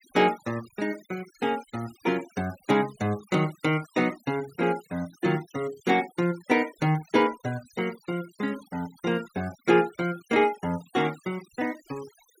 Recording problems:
denoising artefacts; signal-to-artefact ratio 20 dB

